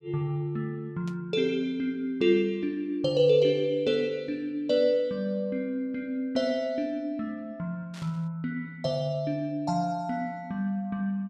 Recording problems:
static burst; at 1 s and at 8 s; peak -14 dB vs average level

